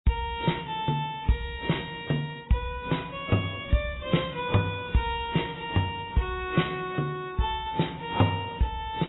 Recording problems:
codec artefacts; AAC, then AAC, log-spectral distance 4 dB, nothing above 3.8 kHz

